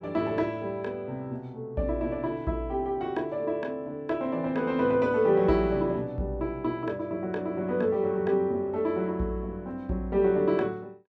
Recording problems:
none

